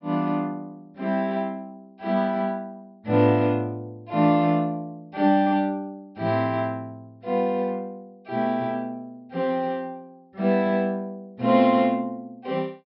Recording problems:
treble cut off; nothing above 5.5 kHz

